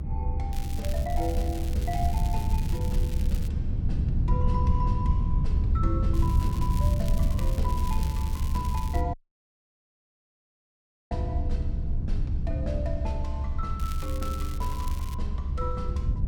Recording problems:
rumble; below 72 Hz, SNR -5 dB
wind noise; below 110 Hz, SNR -5 dB
crackling; from 0.5 to 3.5 s, from 6 to 9 s and from 14 to 15 s; loose cable, SNR 9 dB
audio cutting out; at 9 s for 2 s

